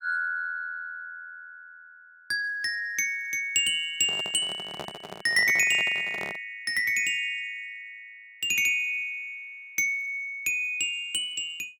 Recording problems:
microphone handling noise; from 4 to 6.5 s; peak -6 dB vs average level

